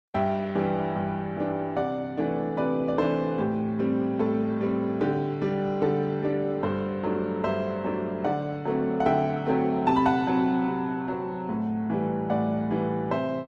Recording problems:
codec artefacts; Opus, log-spectral distance 2 dB

